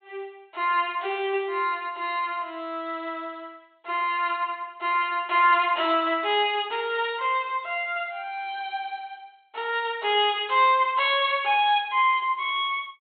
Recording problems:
treble missing; nothing above 4 kHz

